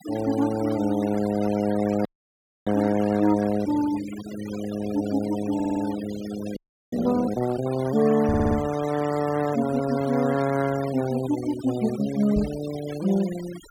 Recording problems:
denoising artefacts; signal-to-artefact ratio 14 dB
audio freezing; at 2 s for 0.5 s and at 6.5 s
stutter; at 5.5 s and at 8.5 s
microphone bump; at 8.5 s and at 12 s; peak -1 dB vs average level

